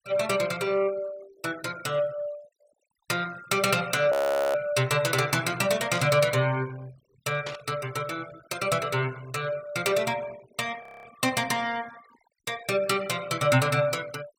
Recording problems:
denoising artefacts; signal-to-artefact ratio 21 dB
audio freezing; at 4 s and at 11 s
static burst; at 6 s and at 7.5 s; peak -6 dB vs average level

